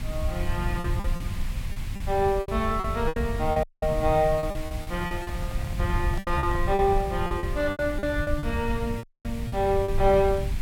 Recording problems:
background hiss; SNR 16 dB
low-frequency rumble; below 94 Hz, SNR 5 dB
lost packets; 12% of the sound replaced, filled with repeated pitch periods
dropout; at 3.5 s and at 9 s
handling noise; from 5 to 7 s; peak -11 dB vs average level

